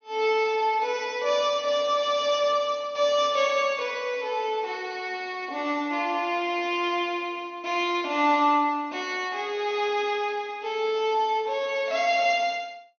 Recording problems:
treble missing; nothing above 6.5 kHz

